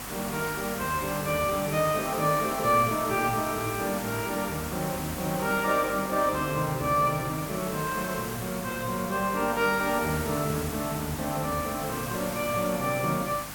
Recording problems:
hum; 50 Hz, harmonics up to 300 Hz, SNR 19 dB
hiss; slope -2 dB per octave, SNR 8 dB

